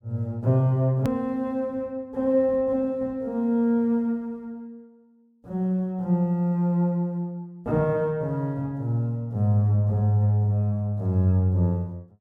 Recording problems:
click at an edit; at 1 s

